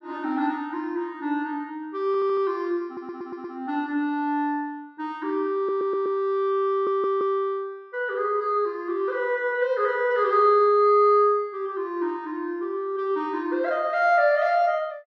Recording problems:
audio stuttering; 4 times, first at 2 s

